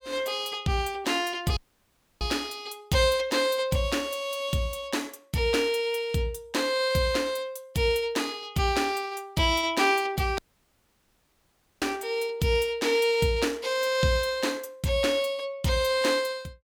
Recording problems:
dropout; at 1.5 s for 0.5 s and at 10 s for 1.5 s

